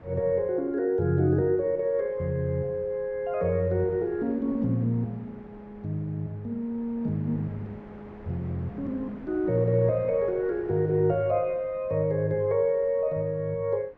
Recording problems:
wind on the microphone; below 690 Hz, SNR 22 dB

